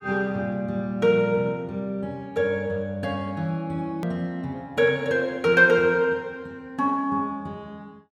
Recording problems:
edit click; at 4 s

